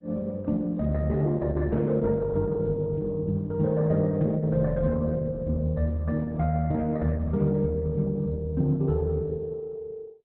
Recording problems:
lossy compression; Opus, log-spectral distance 2 dB, nothing above 3.9 kHz

